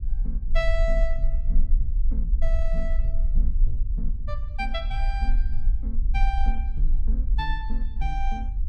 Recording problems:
low-frequency rumble; below 42 Hz, strongest tone 22 Hz, SNR -8 dB

